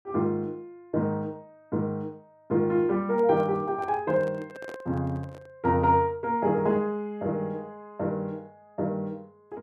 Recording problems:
handling noise; from 3 to 5.5 s; peak -10 dB vs average level

